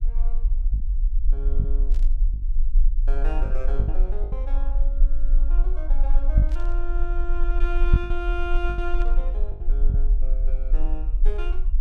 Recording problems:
rumble; below 38 Hz, strongest tone 20 Hz, SNR -10 dB
lost packets; 6% of the sound replaced, filled with the last packet
burst of static; at 2 s, at 6.5 s and at 9 s; peak -10 dB vs average level

